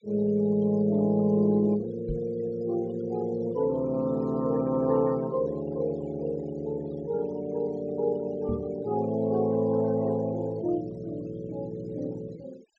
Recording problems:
treble missing; nothing above 8 kHz
denoising artefacts; signal-to-artefact ratio 25 dB
microphone thump; at 2 s and at 8.5 s; peak -1 dB vs average level

